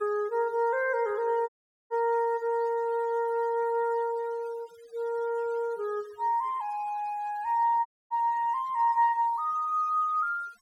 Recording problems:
noise reduction artefacts; signal-to-artefact ratio 28 dB
audio cutting out; at 1.5 s and at 8 s

